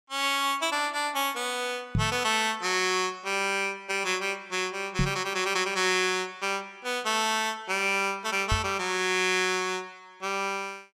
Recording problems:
microphone thump; at 2 s, at 5 s and at 8.5 s; peak +3 dB vs average level

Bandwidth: 16.5 kHz